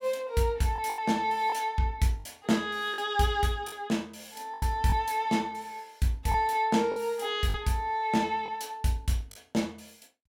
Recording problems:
lost packets; 5% of the sound replaced, filled with the last packet

